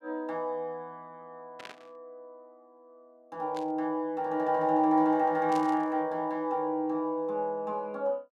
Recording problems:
burst of static; at 1.5 s, at 3.5 s and at 5.5 s; peak -10 dB vs average level

